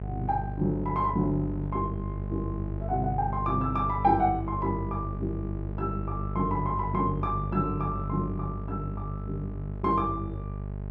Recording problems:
hum; 50 Hz, harmonics up to 850 Hz, SNR 5 dB

